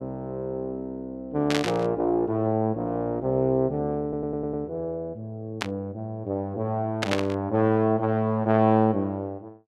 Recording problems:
static burst; at 1.5 s, at 5.5 s and at 7 s; peak +4 dB vs average level
audio stuttering; at 4 s

